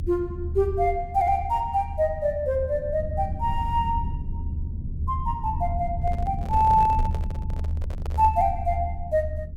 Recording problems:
low-frequency rumble; below 80 Hz, SNR 6 dB
microphone handling noise; from 6 to 8.5 s; peak -10 dB vs average level

